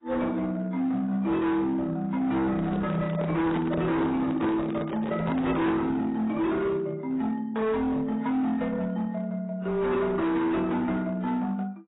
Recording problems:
lossy compression; AAC, then AAC, log-spectral distance 2 dB, nothing above 3.8 kHz
distortion; hard clipping, signal-to-distortion ratio 8 dB
microphone handling noise; from 2.5 to 6 s; peak -1 dB vs average level

